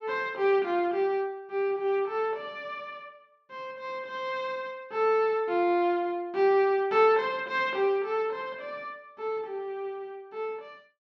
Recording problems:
none

